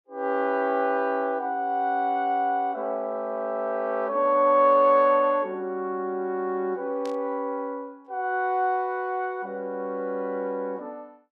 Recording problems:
static burst; at 7 s; peak -14 dB vs average level

